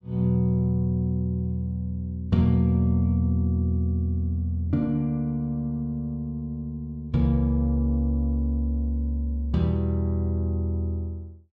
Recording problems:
none

